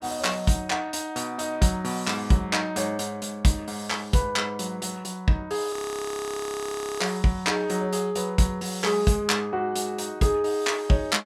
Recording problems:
audio freezing; at 5.5 s for 1.5 s

